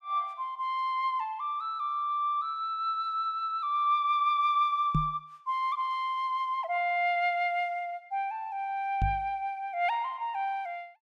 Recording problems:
knock on the microphone; at 5 s and at 9 s; peak +5 dB vs average level

